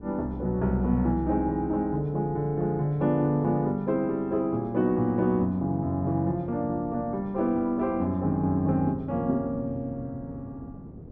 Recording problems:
wind noise; below 280 Hz, SNR 19 dB

